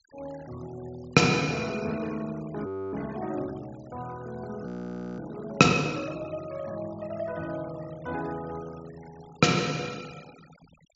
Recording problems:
treble missing; nothing above 7.5 kHz
noise reduction artefacts; signal-to-artefact ratio 21 dB
frozen audio; at 2.5 s and at 4.5 s for 0.5 s

